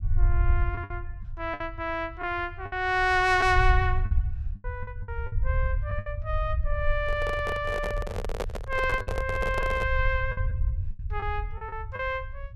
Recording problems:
rumble; below 76 Hz, SNR 3 dB
packet loss; 7% of the sound replaced, filled with the last packet
microphone handling noise; from 7 to 10 s; peak +1 dB vs average level

